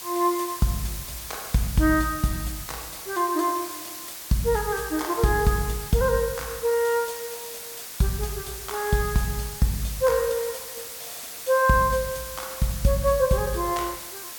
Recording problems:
background hiss; slope +1 dB per octave, SNR 10 dB

